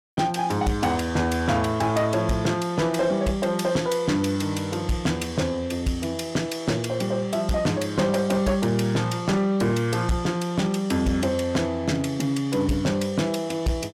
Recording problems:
distortion; soft clipping, signal-to-distortion ratio 11 dB

